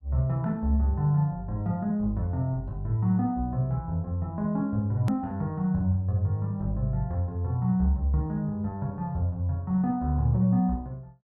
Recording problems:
edit click; at 5 s

